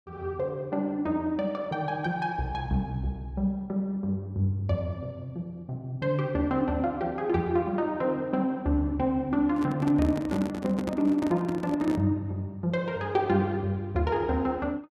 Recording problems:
handling noise; from 9.5 to 12 s; peak 0 dB vs average level

